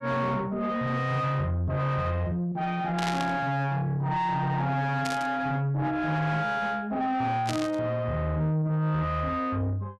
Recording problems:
distortion; soft clipping, signal-to-distortion ratio 10 dB
static burst; at 3 s, at 5 s and at 7.5 s; peak -1 dB vs average level

